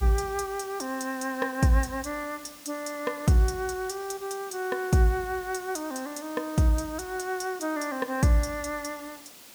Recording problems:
hiss; slope -1 dB per octave, SNR 17 dB

